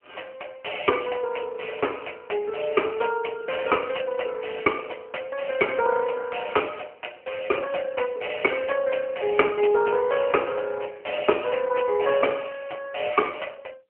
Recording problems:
telephone audio; 280 Hz to 3 kHz, AMR-NB

